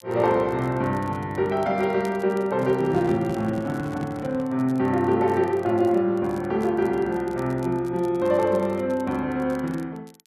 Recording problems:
crackle; vinyl, SNR 29 dB
handling noise; from 2.5 to 4.5 s; peak -5 dB vs average level

